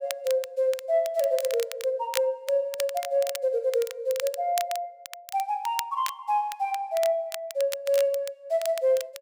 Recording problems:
crackling; vinyl, SNR 12 dB

